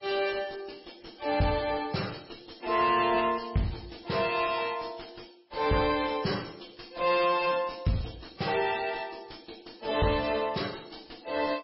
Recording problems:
lossy compression; MP3, log-spectral distance 10 dB, nothing above 5.5 kHz
distorted audio; soft clipping, signal-to-distortion ratio 10 dB

